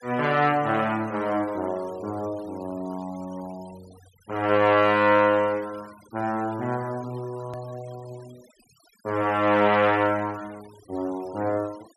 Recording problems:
denoising artefacts; signal-to-artefact ratio 25 dB
click at an edit; at 7.5 s

